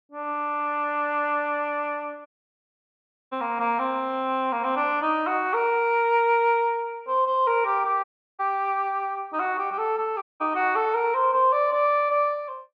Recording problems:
audio cutting out; at 2.5 s for 1 s, at 8 s and at 10 s

